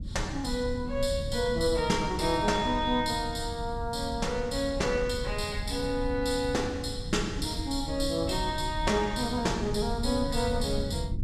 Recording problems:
low-frequency rumble; below 120 Hz, SNR 8 dB

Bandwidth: 14.5 kHz